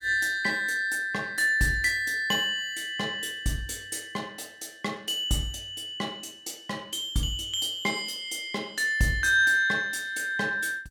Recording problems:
none

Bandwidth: 17 kHz